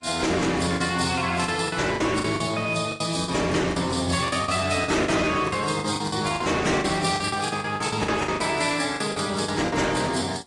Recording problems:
lossy compression; AAC, then AAC, log-spectral distance 6 dB
distorted audio; hard clipping, uneven, signal-to-distortion ratio 11 dB
lost packets; 13% of the sound replaced, filled with the last packet

